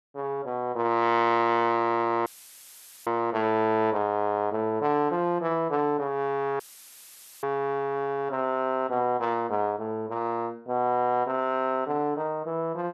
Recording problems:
dropout; at 2.5 s for 1 s and at 6.5 s for 1 s; filled with static

